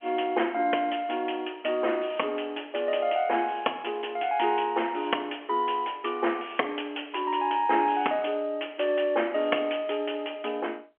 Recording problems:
phone line; 260 Hz to 3.3 kHz, G.711

